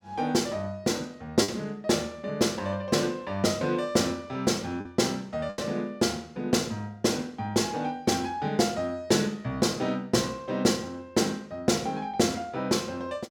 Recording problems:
packet loss; 1.3% of the sound replaced, filled with the last packet

